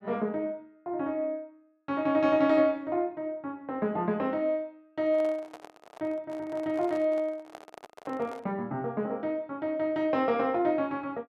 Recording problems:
handling noise; from 5 to 8.5 s; peak -10 dB vs average level

